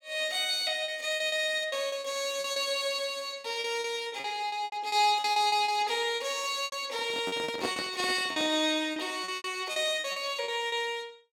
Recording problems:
lost packets; 13% of the sound replaced, filled with repeated pitch periods
handling noise; from 7 to 8.5 s; peak -1 dB vs average level

